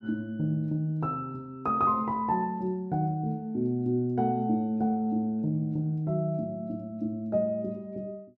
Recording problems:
none

